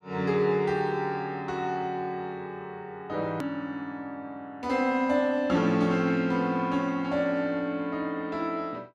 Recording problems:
hard cut with a click; at 3.5 s

